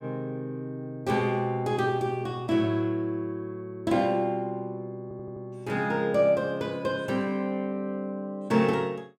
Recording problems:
audio stuttering; at 5 s

